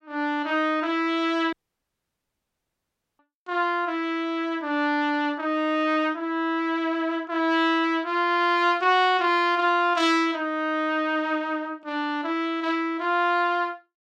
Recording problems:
audio cutting out; at 1.5 s for 1.5 s

